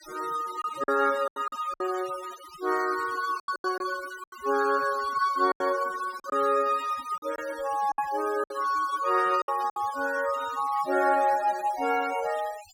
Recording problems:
noise reduction artefacts; signal-to-artefact ratio 17 dB
lost packets; 7% of the sound replaced, filled with silence

